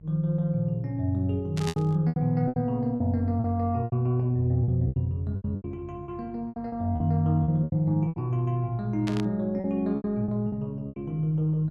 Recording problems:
hum; 50 Hz, harmonics up to 450 Hz, SNR 22 dB
lost packets; 12% of the sound replaced, filled with repeated pitch periods
static burst; at 1.5 s and at 9 s; peak -4 dB vs average level

